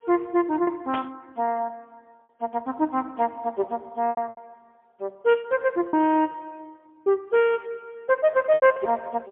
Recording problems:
phone line; 280 Hz to 3.3 kHz, AMR-NB, then MP3
lost packets; 6% of the sound replaced, filled with repeated pitch periods
burst of static; at 1 s; peak -5 dB vs average level

